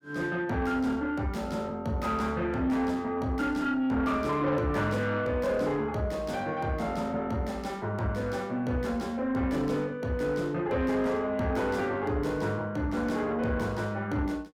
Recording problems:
distorted audio; soft clipping, signal-to-distortion ratio 11 dB

